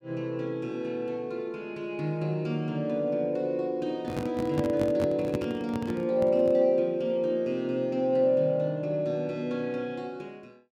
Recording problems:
handling noise; from 4 to 6.5 s; peak 0 dB vs average level

